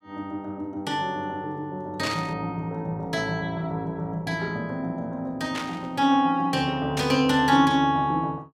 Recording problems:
static burst; at 2 s, at 5.5 s and at 7 s; peak -1 dB vs average level

